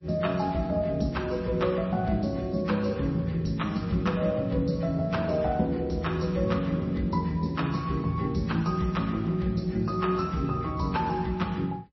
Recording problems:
codec artefacts; MP3, log-spectral distance 2 dB, nothing above 5.7 kHz

